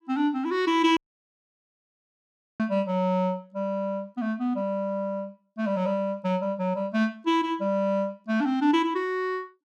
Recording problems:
dropout; at 1 s for 1.5 s

